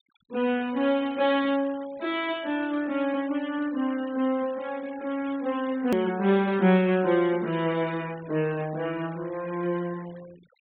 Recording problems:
low-pass filter; nothing above 4 kHz
noise reduction artefacts; signal-to-artefact ratio 23 dB
hard cut with a click; at 6 s

